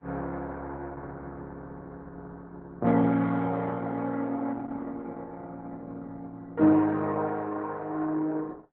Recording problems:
lossy compression; AAC, then Opus, log-spectral distance 3 dB

